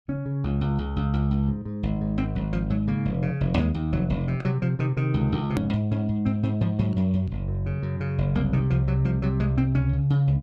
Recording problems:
click at an edit; at 5.5 s

